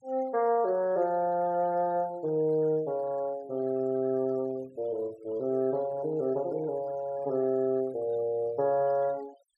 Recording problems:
noise reduction artefacts; signal-to-artefact ratio 27 dB

